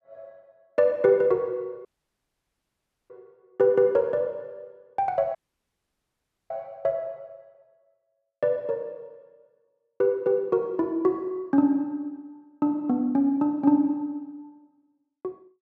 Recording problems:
audio cutting out; at 2 s for 1.5 s and at 5.5 s for 1 s

